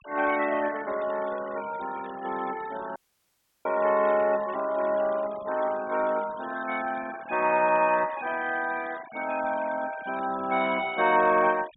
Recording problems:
treble missing; nothing above 4 kHz
noise reduction artefacts; signal-to-artefact ratio 18 dB
audio cutting out; at 3 s for 0.5 s

